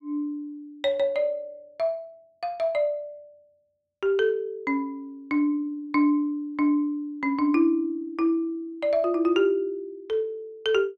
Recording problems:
none

